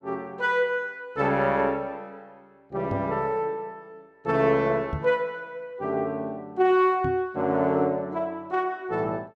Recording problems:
knock on the microphone; at 3 s, at 5 s and at 7 s; peak -1 dB vs average level

